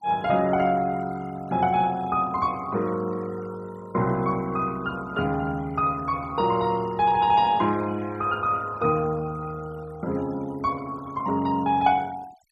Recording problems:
denoising artefacts; signal-to-artefact ratio 22 dB

